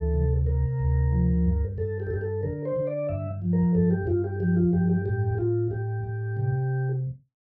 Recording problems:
none

